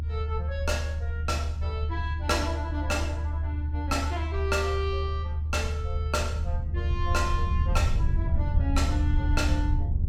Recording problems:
low-frequency rumble; below 78 Hz, strongest tone 76 Hz, SNR -3 dB

